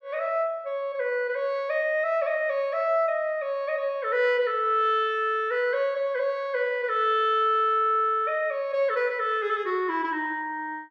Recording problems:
none

